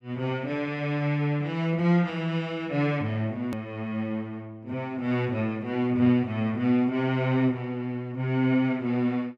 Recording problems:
edit click; at 3.5 s

